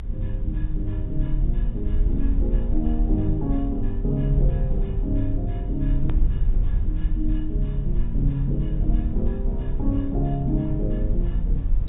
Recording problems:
treble cut off; nothing above 4 kHz
electrical hum; 60 Hz, harmonics up to 540 Hz, SNR 20 dB
rumble; below 50 Hz, SNR -1 dB
click at an edit; at 6 s

